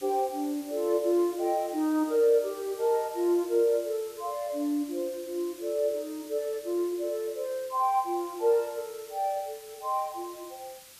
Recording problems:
hiss; slope +2 dB per octave, SNR 19 dB

